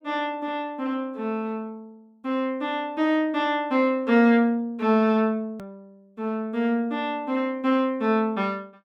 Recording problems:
edit click; at 5.5 s

